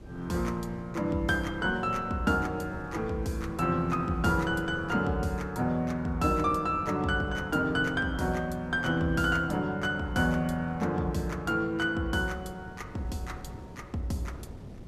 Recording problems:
wind noise; below 310 Hz, SNR 17 dB

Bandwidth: 14.5 kHz